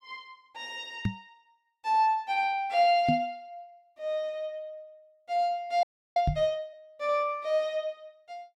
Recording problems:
microphone bump; at 1 s, at 3 s and at 6.5 s; peak +4 dB vs average level
audio freezing; at 6 s

